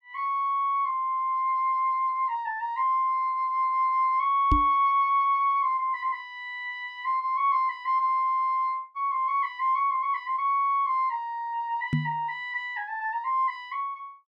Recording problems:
microphone bump; at 4.5 s and at 12 s; peak +4 dB vs average level

